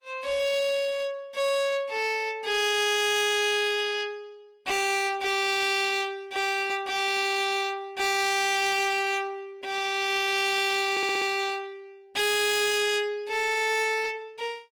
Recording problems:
codec artefacts; Opus, log-spectral distance 4 dB, nothing above 20.1 kHz
distortion; hard clipping, uneven, signal-to-distortion ratio 7 dB
audio stuttering; at 11 s

